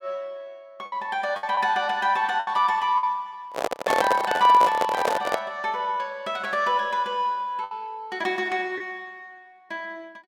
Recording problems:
lost packets; 4% of the sound replaced, filled with the last packet
microphone handling noise; from 3.5 to 5.5 s; peak +4 dB vs average level

